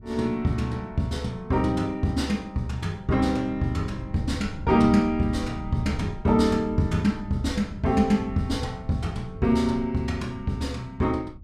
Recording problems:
wind noise; below 140 Hz, SNR 15 dB

